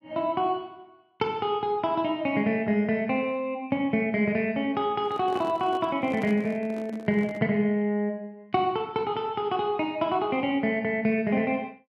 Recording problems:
handling noise; from 5 to 7.5 s; peak -8 dB vs average level

